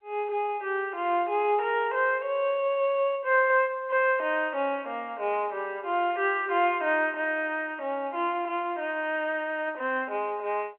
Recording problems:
telephone audio; 320 Hz to 3.1 kHz, G.711

